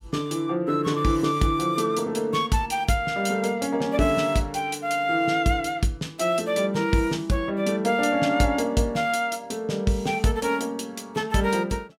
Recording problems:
none

